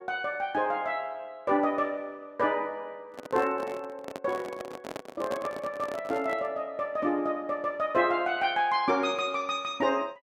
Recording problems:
handling noise; from 3 to 6.5 s; peak -1 dB vs average level

